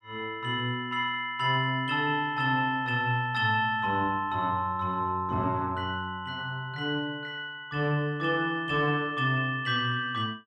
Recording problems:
none

